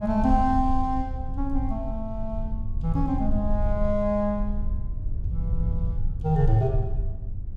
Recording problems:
rumble; below 72 Hz, SNR 3 dB

